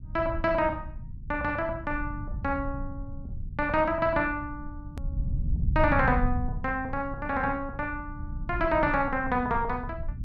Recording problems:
rumble; below 100 Hz, SNR 8 dB
hard cut with a click; at 5 s

